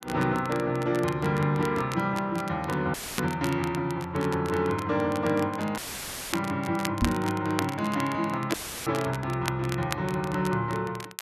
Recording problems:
crackle; vinyl, SNR 13 dB
audio cutting out; at 3 s, at 6 s for 0.5 s and at 8.5 s; filled with static
microphone thump; at 7 s; peak +5 dB vs average level

